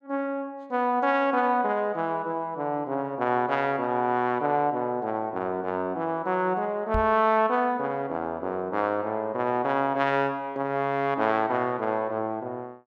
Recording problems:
microphone bump; at 7 s; peak -1 dB vs average level

